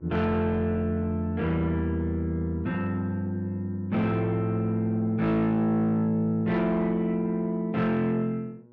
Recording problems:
distortion; soft clipping, signal-to-distortion ratio 12 dB
electrical hum; 60 Hz, harmonics up to 1.1 kHz, SNR 28 dB

